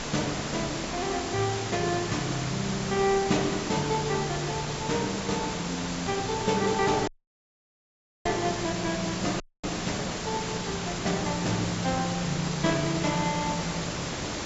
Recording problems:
treble missing; nothing above 8 kHz
distortion; soft clipping, signal-to-distortion ratio 1 dB
hiss; slope -3 dB per octave, SNR 4 dB
audio cutting out; at 7 s for 1 s and at 9.5 s

